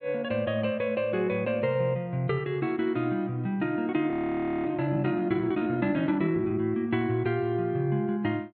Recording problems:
treble cut off; nothing above 4.5 kHz
frozen audio; at 4 s for 0.5 s

